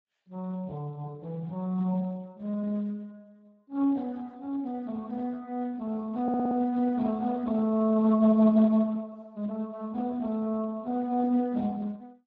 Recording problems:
lossy compression; Speex, log-spectral distance 2 dB
stutter; at 6 s

